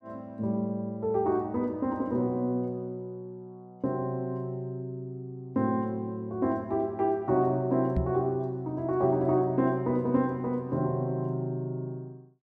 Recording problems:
microphone bump; at 8 s; peak +3 dB vs average level

